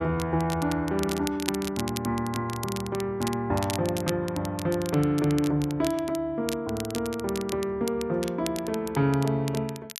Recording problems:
crackling; vinyl, SNR 12 dB

